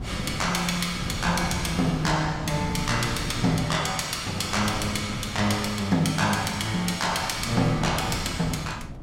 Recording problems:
wind noise; below 260 Hz, SNR 10 dB

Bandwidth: 16 kHz